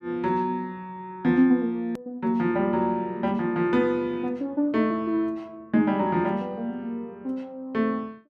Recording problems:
click at an edit; at 2 s

